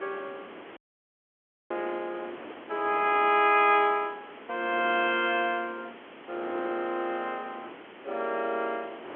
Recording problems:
phone line; 280 Hz to 3.5 kHz, G.711
hiss; SNR 20 dB
wind noise; below 1.2 kHz, SNR 20 dB
audio cutting out; at 1 s for 1 s

